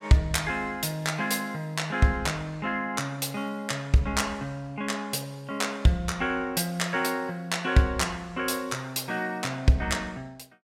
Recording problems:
none

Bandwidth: 17 kHz